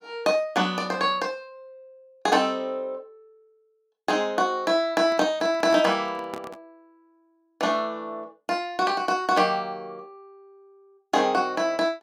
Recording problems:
handling noise; from 5 to 6.5 s; peak -7 dB vs average level

